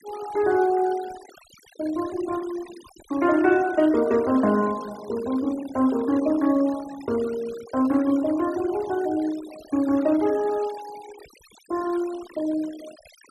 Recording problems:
noise reduction artefacts; signal-to-artefact ratio 20 dB

